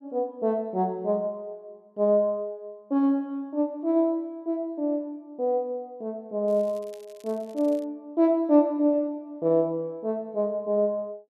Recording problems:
crackling; from 6.5 to 8 s; loose cable, SNR 29 dB

